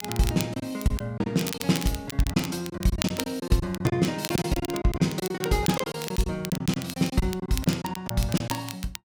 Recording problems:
crackling; vinyl, SNR 10 dB
lost packets; 13% of the sound replaced, filled with silence

